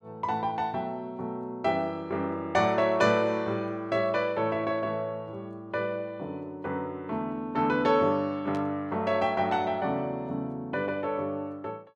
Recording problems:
burst of static; at 8.5 s; peak -14 dB vs average level

